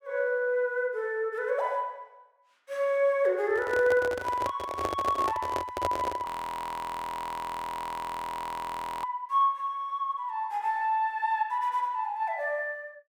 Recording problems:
handling noise; from 3.5 to 6.5 s; peak +3 dB vs average level
audio freezing; at 6.5 s for 3 s

